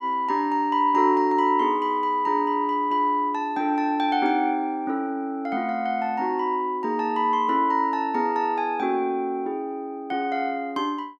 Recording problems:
none

